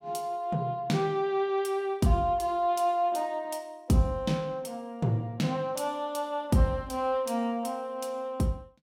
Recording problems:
none

